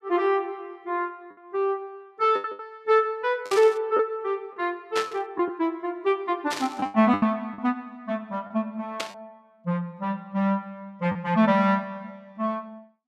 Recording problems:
packet loss; 5% of the sound replaced, filled with the last packet
static burst; 4 times, first at 3.5 s; peak 0 dB vs average level

